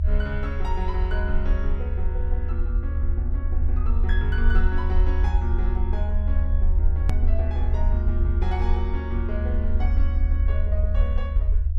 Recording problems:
rumble; below 74 Hz, SNR -9 dB
hard cut with a click; at 7 s

